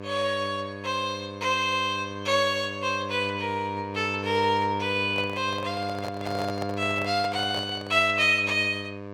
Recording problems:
hum; 50 Hz, harmonics up to 1.7 kHz, SNR 9 dB
microphone handling noise; from 5 to 8 s; peak -5 dB vs average level

